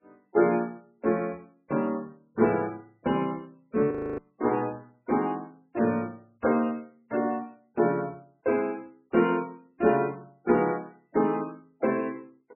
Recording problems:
codec artefacts; MP3, log-spectral distance 2 dB, nothing above 2.4 kHz
frozen audio; at 4 s

